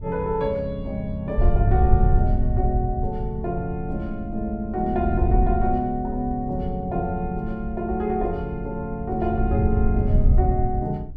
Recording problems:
wind noise; below 86 Hz, SNR 0 dB

